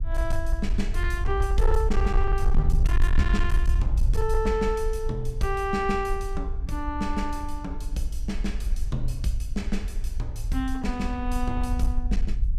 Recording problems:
distorted audio; hard clipping, signal-to-distortion ratio 12 dB
low-frequency rumble; below 56 Hz, SNR -1 dB

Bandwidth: 14.5 kHz